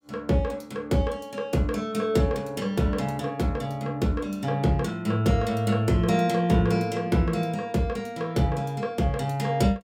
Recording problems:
none

